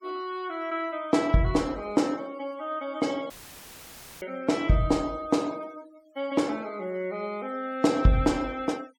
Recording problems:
denoising artefacts; signal-to-artefact ratio 24 dB
dropout; at 3.5 s for 1 s; filled with static

